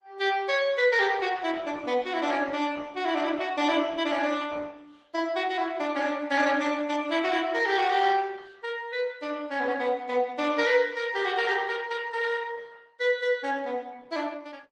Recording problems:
codec artefacts; Opus, log-spectral distance 4 dB

